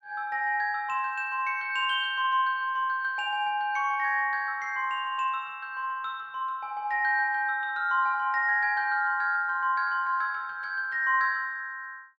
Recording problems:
none

